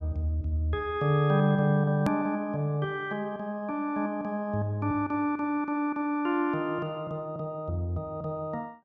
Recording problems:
click at an edit; at 2 s

